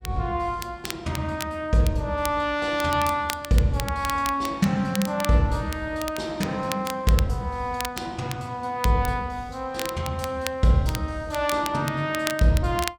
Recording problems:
crackle; vinyl, SNR 11 dB

